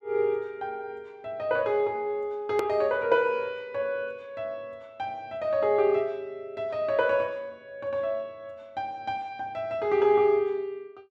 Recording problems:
edit click; at 2.5 s

